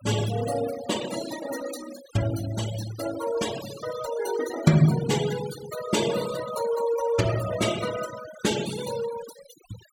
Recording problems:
noise reduction artefacts; signal-to-artefact ratio 10 dB

